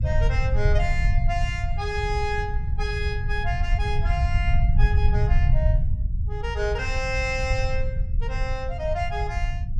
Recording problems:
rumble; below 86 Hz, SNR -4 dB

